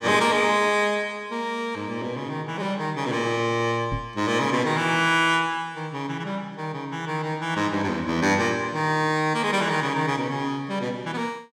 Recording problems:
knock on the microphone; at 4 s; peak -3 dB vs average level

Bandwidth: 17 kHz